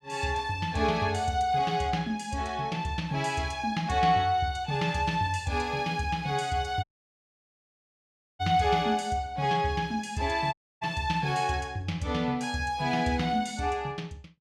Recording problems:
dropout; at 7 s for 1.5 s and at 11 s

